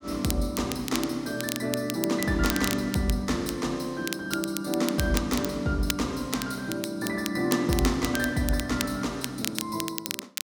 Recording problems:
crackle; vinyl, SNR 7 dB

